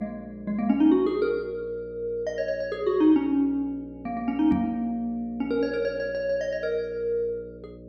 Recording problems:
mains hum; 60 Hz, harmonics up to 600 Hz, SNR 19 dB
knock on the microphone; at 4.5 s; peak 0 dB vs average level

